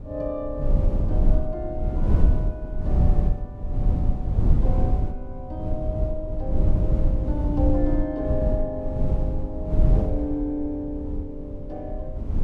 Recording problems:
wind on the microphone; below 90 Hz, SNR -6 dB

